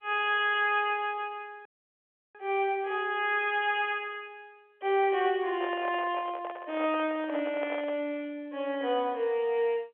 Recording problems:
phone line; 300 Hz to 3.4 kHz, G.711
audio freezing; at 1.5 s for 0.5 s
handling noise; from 5.5 to 8 s; peak -5 dB vs average level

